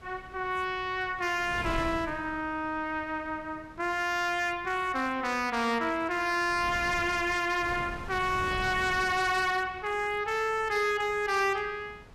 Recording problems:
distortion; hard clipping, signal-to-distortion ratio 11 dB
wind noise; below 570 Hz, SNR 16 dB

